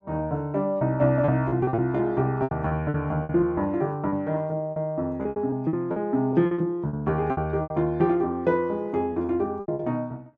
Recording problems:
lost packets; 13% of the sound replaced, filled with repeated pitch periods

